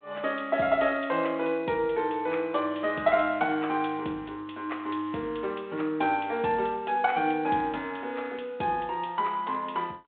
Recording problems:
phone line; 190 Hz to 3.7 kHz, G.726

